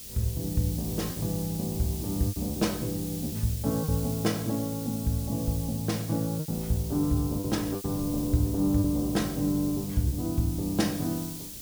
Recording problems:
hiss; slope +7 dB per octave, SNR 10 dB
wind on the microphone; below 260 Hz, SNR 21 dB
packet loss; 5% of the sound replaced, filled with repeated pitch periods

